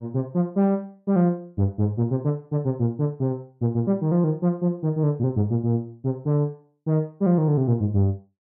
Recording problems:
none

